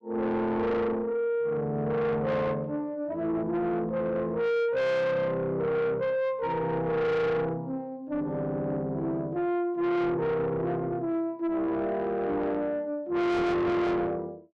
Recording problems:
distorted audio; soft clipping, signal-to-distortion ratio 7 dB

